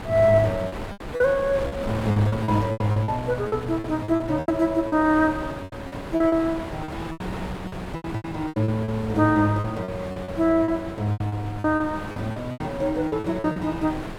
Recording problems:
wind on the microphone; below 970 Hz, SNR 11 dB
packet loss; 15% of the sound replaced, filled with repeated pitch periods

